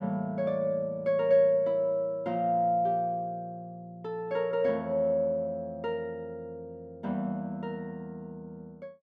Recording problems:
none

